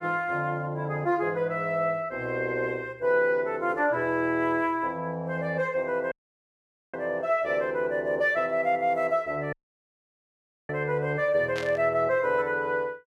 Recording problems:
audio cutting out; at 6 s for 1 s and at 9.5 s for 1 s
static burst; at 12 s; peak -5 dB vs average level

